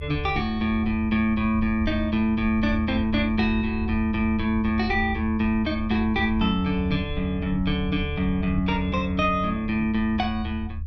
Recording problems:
low-frequency rumble; below 80 Hz, strongest tone 78 Hz, SNR 9 dB

